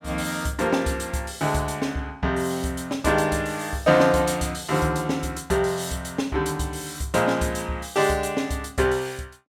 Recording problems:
none

